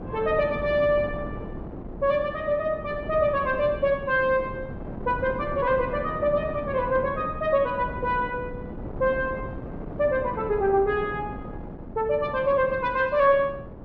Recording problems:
low-pass filter; nothing above 7.2 kHz
wind on the microphone; below 420 Hz, SNR 12 dB

